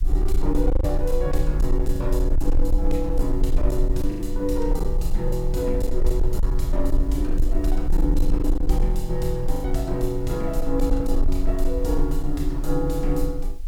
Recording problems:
distorted audio; hard clipping, uneven, signal-to-distortion ratio 12 dB
hiss; slope +1 dB per octave, SNR 28 dB
rumble; below 38 Hz, strongest tone 18 Hz, SNR 0 dB
lost packets; 3% of the sound replaced, filled with the last packet

